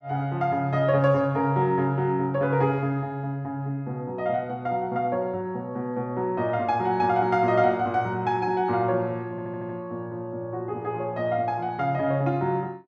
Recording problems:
audio stuttering; at 9.5 s

